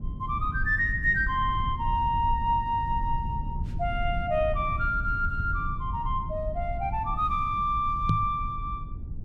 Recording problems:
low-frequency rumble; below 100 Hz, SNR 7 dB
knock on the microphone; at 8 s; peak +5 dB vs average level

